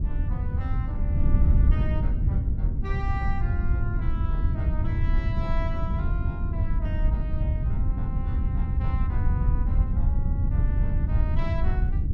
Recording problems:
wind noise; below 92 Hz, SNR -13 dB

